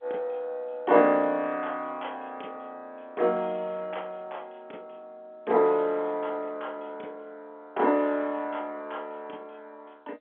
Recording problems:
phone line; 260 Hz to 3.6 kHz, G.711

